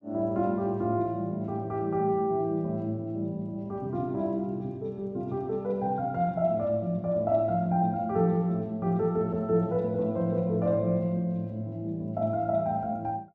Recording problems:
none

